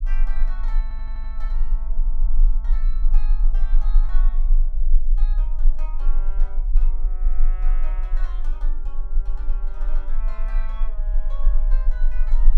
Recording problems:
rumble; below 30 Hz, strongest tone 22 Hz, SNR -20 dB
audio stuttering; at 1 s
burst of static; at 2.5 s; peak -14 dB vs average level

